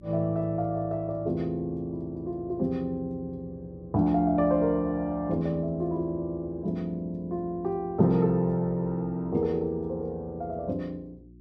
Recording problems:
hum; 60 Hz, harmonics up to 360 Hz, SNR 23 dB

